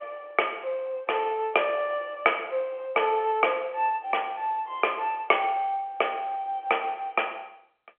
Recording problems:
telephone audio; 320 Hz to 3.2 kHz, G.711

